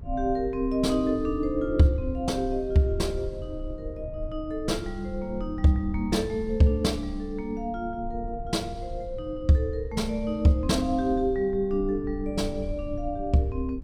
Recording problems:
low-frequency rumble; below 76 Hz, strongest tone 30 Hz, SNR 13 dB

